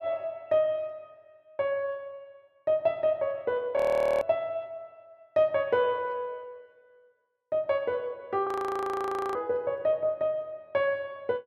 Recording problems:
audio freezing; at 4 s and at 8.5 s for 1 s

